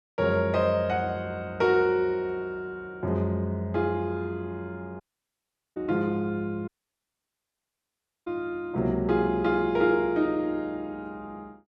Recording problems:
audio cutting out; at 5 s for 1 s and at 6.5 s for 1.5 s

